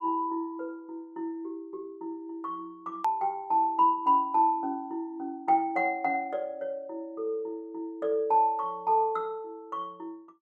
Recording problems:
click at an edit; at 3 s

